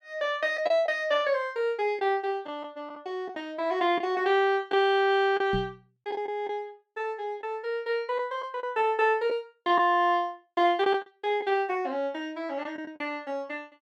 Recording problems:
packet loss; 4% of the sound replaced, filled with the last packet
microphone bump; at 5.5 s; peak -1 dB vs average level

